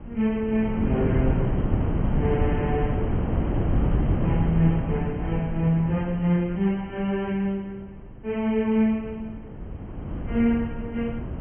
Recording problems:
treble cut off; nothing above 3.2 kHz
wind on the microphone; below 250 Hz, SNR 2 dB

